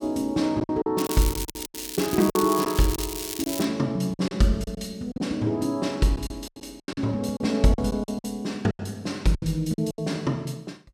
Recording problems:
lost packets; 12% of the sound replaced, filled with silence
crackle; from 1 to 3.5 s; loose cable, SNR 7 dB

